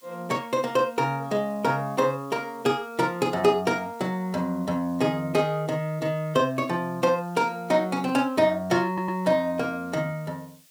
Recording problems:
background hiss; SNR 28 dB
stutter; at 9 s

